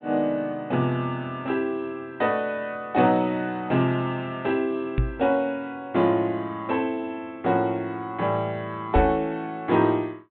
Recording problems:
low-pass filter; nothing above 4 kHz
microphone bump; at 5 s and at 9 s; peak +5 dB vs average level

